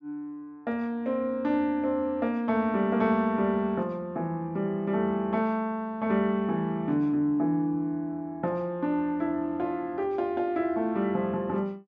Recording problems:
treble missing; nothing above 8 kHz

